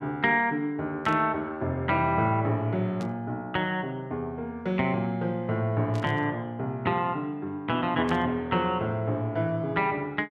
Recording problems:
burst of static; 4 times, first at 1 s; peak -13 dB vs average level

